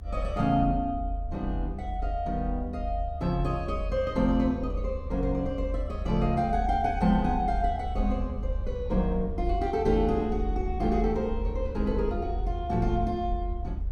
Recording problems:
rumble; below 74 Hz, strongest tone 44 Hz, SNR 5 dB

